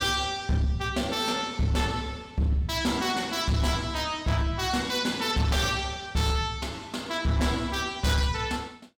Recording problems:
distortion; hard clipping, signal-to-distortion ratio 12 dB

